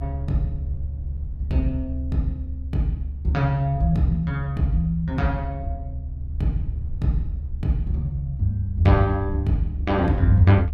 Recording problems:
low-frequency rumble; below 72 Hz, strongest tone 70 Hz, SNR 7 dB

